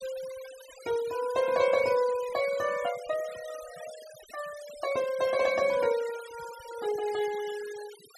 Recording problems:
noise reduction artefacts; signal-to-artefact ratio 16 dB

